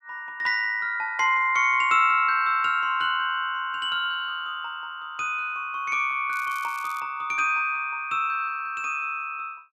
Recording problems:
crackle; at 6.5 s; loose cable, SNR 23 dB

